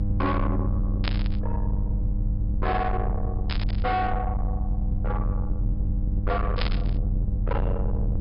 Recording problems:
treble cut off; nothing above 5.5 kHz
distorted audio; soft clipping, signal-to-distortion ratio 7 dB
hum; 50 Hz, harmonics up to 600 Hz, SNR 4 dB
low-frequency rumble; below 80 Hz, strongest tone 40 Hz, SNR -1 dB
static burst; at 1 s, at 3.5 s and at 6.5 s; peak +4 dB vs average level

